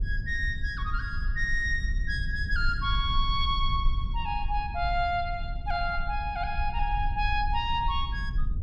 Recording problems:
rumble; below 60 Hz, SNR 3 dB

